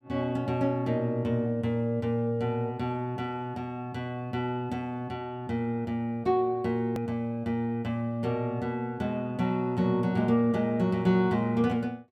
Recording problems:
hard cut with a click; at 7 s

